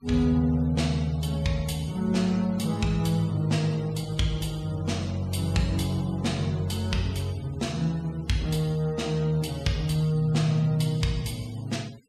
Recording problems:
noise reduction artefacts; signal-to-artefact ratio 23 dB

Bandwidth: 14.5 kHz